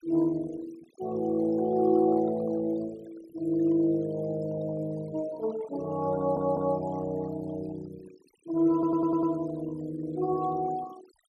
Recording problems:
noise reduction artefacts; signal-to-artefact ratio 21 dB
audio stuttering; at 6 s and at 8.5 s

